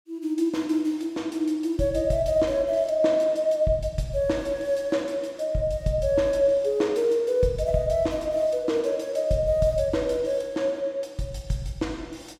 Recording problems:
none

